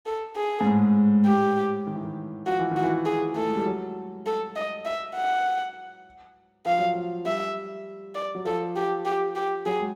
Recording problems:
none

